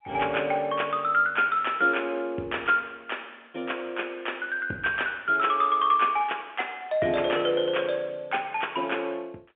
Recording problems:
telephone audio; 190 Hz to 3.3 kHz, G.711

